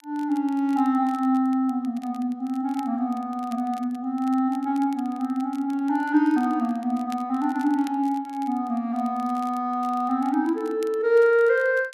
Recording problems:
crackle; vinyl, SNR 28 dB

